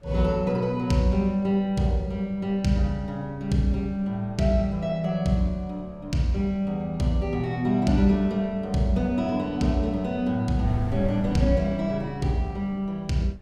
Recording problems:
wind noise; below 100 Hz, SNR 19 dB

